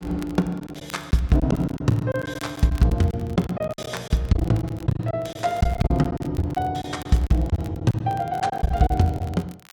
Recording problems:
crackle; vinyl, SNR 24 dB
packet loss; 12% of the sound replaced, filled with silence

